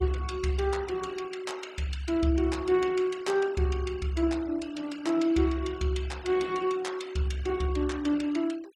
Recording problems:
denoising artefacts; signal-to-artefact ratio 21 dB

